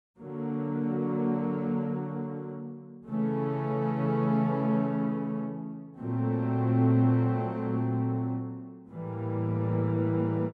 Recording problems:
none

